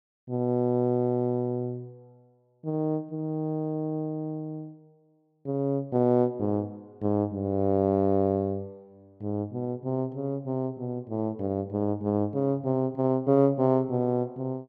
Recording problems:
none

